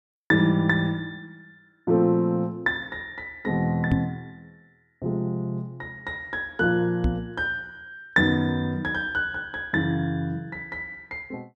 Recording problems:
microphone bump; at 4 s and at 7 s; peak +6 dB vs average level

